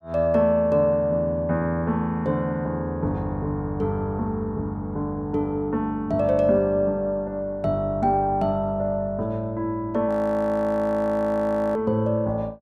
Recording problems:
audio freezing; at 10 s for 1.5 s

